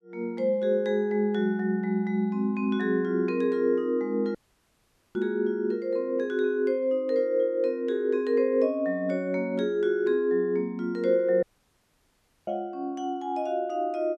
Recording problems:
audio cutting out; at 4.5 s for 1 s and at 11 s for 1 s

